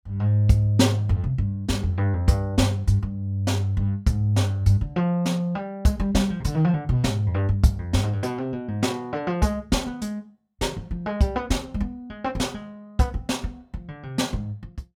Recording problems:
none

